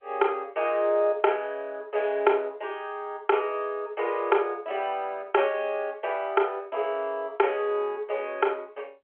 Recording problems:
phone line; 300 Hz to 3.3 kHz, G.711

